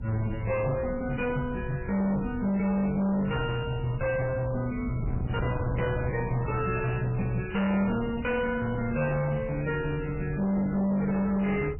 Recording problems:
lossy compression; MP3, log-spectral distance 3 dB, nothing above 2.4 kHz
distorted audio; hard clipping, uneven, signal-to-distortion ratio 7 dB
wind on the microphone; below 150 Hz, SNR 10 dB

